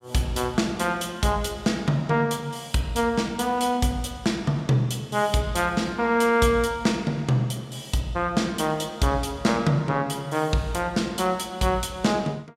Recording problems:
none

